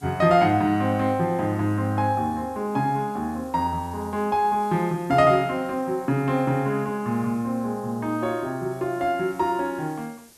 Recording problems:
hiss; SNR 27 dB

